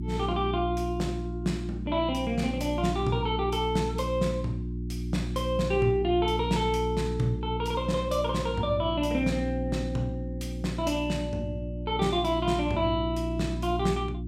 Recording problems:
hum; 60 Hz, harmonics up to 360 Hz, SNR 5 dB

